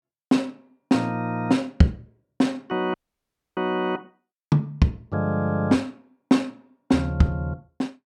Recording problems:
audio cutting out; at 3 s for 0.5 s

